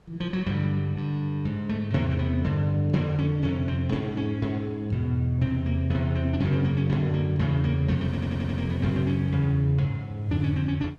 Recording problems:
wind on the microphone; below 530 Hz, SNR 25 dB
audio stuttering; at 8 s

